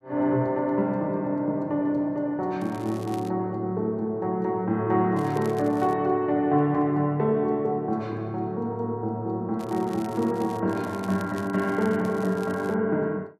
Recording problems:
crackling; 4 times, first at 2.5 s; loose cable, SNR 23 dB

